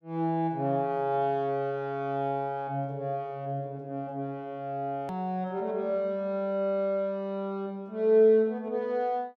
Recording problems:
click at an edit; at 5 s

